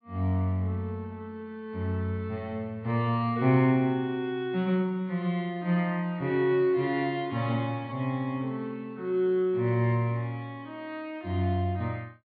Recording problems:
treble cut off; nothing above 4.7 kHz

